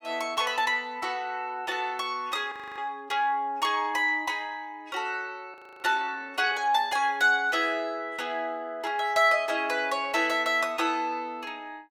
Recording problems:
audio freezing; at 2.5 s and at 5.5 s

